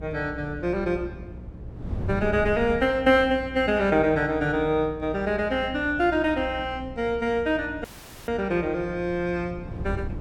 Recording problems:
electrical hum; 60 Hz, harmonics up to 660 Hz, SNR 17 dB
wind noise; below 190 Hz, SNR 15 dB
dropout; at 8 s

